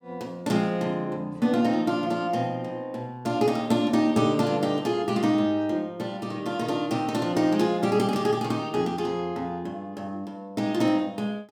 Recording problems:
none

